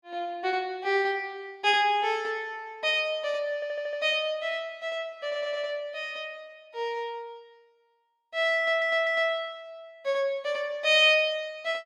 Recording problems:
stutter; at 3.5 s, at 5.5 s and at 8.5 s

